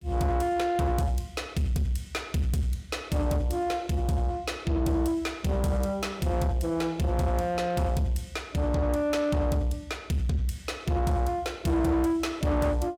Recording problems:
distortion; soft clipping, signal-to-distortion ratio 10 dB

